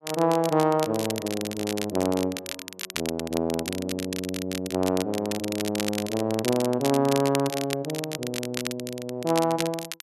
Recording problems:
crackle; vinyl, SNR 8 dB

